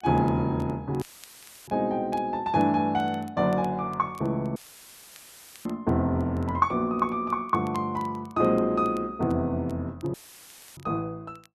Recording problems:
crackle; vinyl, SNR 30 dB
audio cutting out; at 1 s for 0.5 s, at 4.5 s for 1 s and at 10 s for 0.5 s; filled with static

